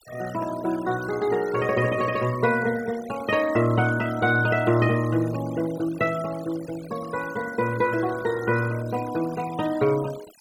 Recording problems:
denoising artefacts; signal-to-artefact ratio 16 dB

